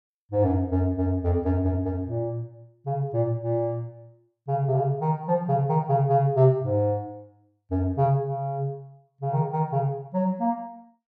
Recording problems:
none

